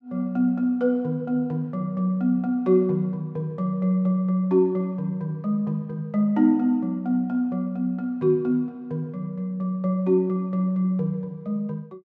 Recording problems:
none

